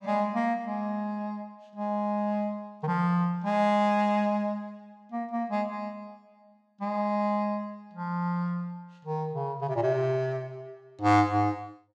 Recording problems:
none

